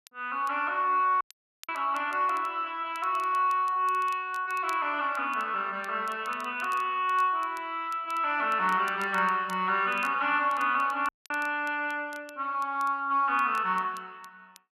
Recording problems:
crackling; vinyl, SNR 26 dB
audio cutting out; at 1 s and at 11 s

